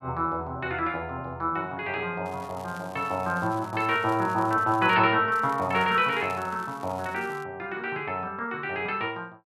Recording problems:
crackle; from 2.5 to 5 s and from 5.5 to 7.5 s; loose cable, SNR 23 dB

